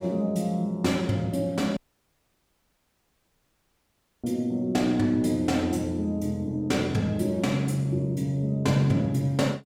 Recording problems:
audio cutting out; at 2 s for 2.5 s

